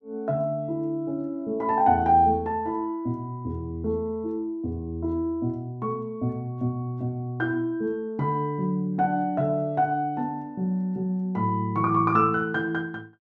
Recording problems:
none

